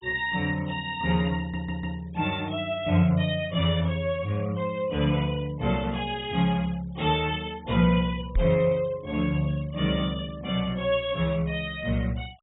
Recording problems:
low-pass filter; nothing above 4 kHz
noise reduction artefacts; signal-to-artefact ratio 26 dB
audio stuttering; at 1.5 s
microphone thump; at 8.5 s; peak +3 dB vs average level

